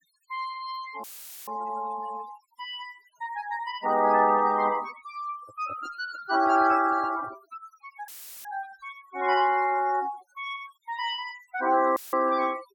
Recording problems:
noise reduction artefacts; signal-to-artefact ratio 17 dB
audio cutting out; at 1 s, at 8 s and at 12 s; filled with static
handling noise; from 5.5 to 7.5 s; peak -12 dB vs average level

